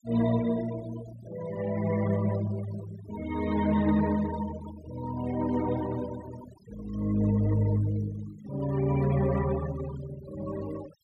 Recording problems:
noise reduction artefacts; signal-to-artefact ratio 15 dB

